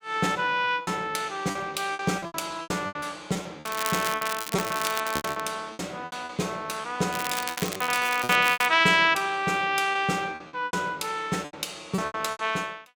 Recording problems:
packet loss; 15% of the sound replaced, filled with repeated pitch periods
crackle; from 3.5 to 5.5 s and from 7 to 8.5 s; loose cable, SNR 7 dB

